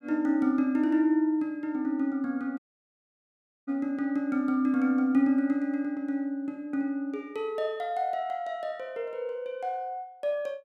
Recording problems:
audio cutting out; at 2.5 s for 1 s

